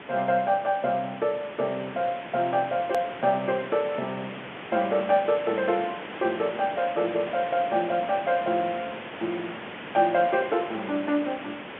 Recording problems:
telephone audio; 190 Hz to 3.7 kHz, G.711
hiss; SNR 11 dB
hard cut with a click; at 3 s

